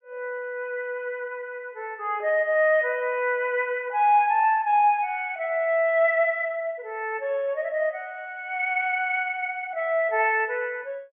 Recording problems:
treble cut off; nothing above 3.4 kHz

